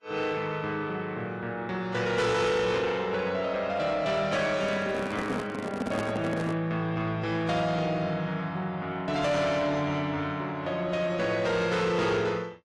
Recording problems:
lossy codec; AAC, log-spectral distance 2 dB, nothing above 11 kHz
distorted audio; soft clipping, signal-to-distortion ratio 11 dB
microphone handling noise; from 4.5 to 6.5 s; peak +1 dB vs average level

